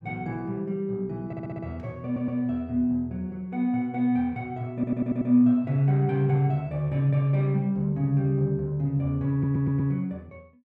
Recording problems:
audio stuttering; 4 times, first at 1.5 s

